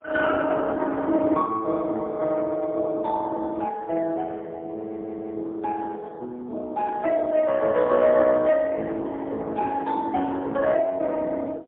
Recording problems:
phone line; 240 Hz to 3 kHz, AMR-NB, then MP3
audio stuttering; at 5 s

